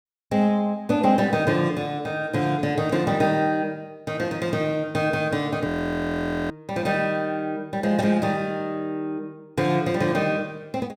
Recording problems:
audio freezing; at 5.5 s for 1 s

